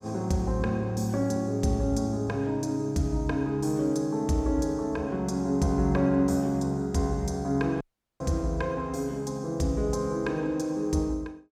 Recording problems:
dropout; at 8 s

